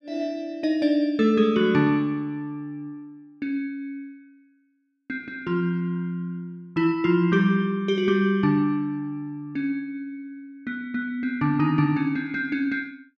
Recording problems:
none

